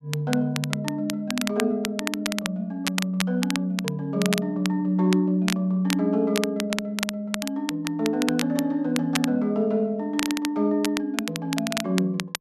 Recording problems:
crackle; vinyl, SNR 7 dB

